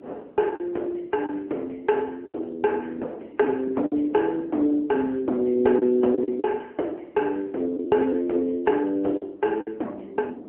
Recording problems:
telephone audio; 240 Hz to 2.6 kHz, AMR-NB
wind noise; below 420 Hz, SNR 18 dB
lost packets; 5% of the sound replaced, filled with the last packet

